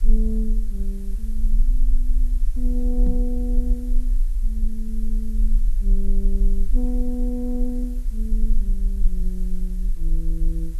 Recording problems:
background hiss; slope -1 dB per octave, SNR 20 dB
low-frequency rumble; below 36 Hz, strongest tone 20 Hz, SNR -7 dB
microphone bump; at 3 s; peak +7 dB vs average level

